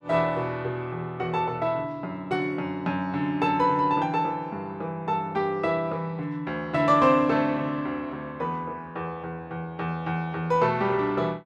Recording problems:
none

